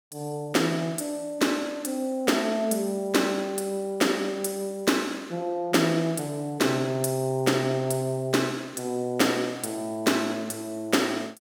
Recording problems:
none

